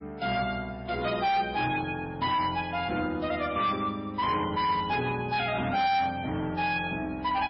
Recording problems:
lossy codec; MP3, log-spectral distance 3 dB, nothing above 5 kHz
distorted audio; hard clipping, uneven, signal-to-distortion ratio 10 dB

